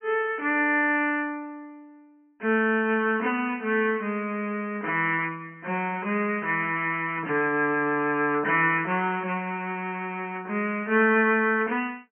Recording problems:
treble missing; nothing above 3.1 kHz

